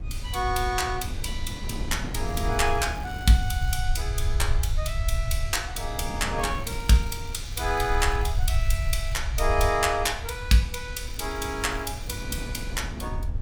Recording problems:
rumble; below 74 Hz, SNR 5 dB
wind on the microphone; below 310 Hz, SNR 12 dB
crackling; from 2.5 to 4 s, from 6.5 to 9 s and from 11 to 12 s; loose cable, SNR 23 dB

